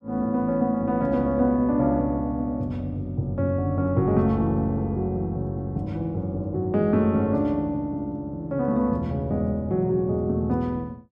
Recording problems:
none

